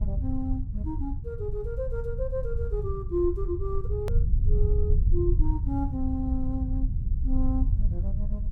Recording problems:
low-frequency rumble; below 78 Hz, SNR -4 dB
hard cut with a click; at 4 s

